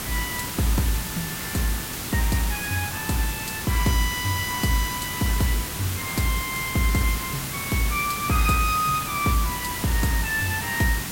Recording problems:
background hiss; slope -2 dB per octave, SNR 4 dB

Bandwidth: 16.5 kHz